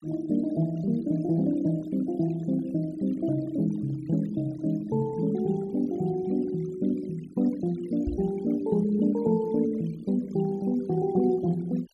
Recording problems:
denoising artefacts; signal-to-artefact ratio 23 dB
microphone bump; at 8 s; peak -2 dB vs average level

